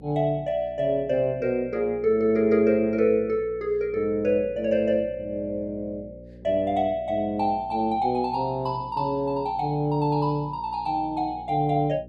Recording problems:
electrical hum; 60 Hz, harmonics up to 540 Hz, SNR 21 dB

